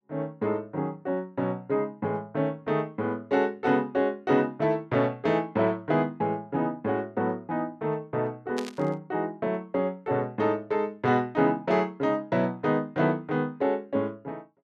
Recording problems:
burst of static; at 8.5 s; peak -5 dB vs average level

